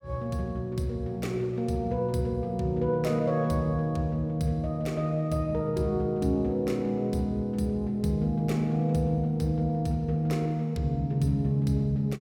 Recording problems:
none

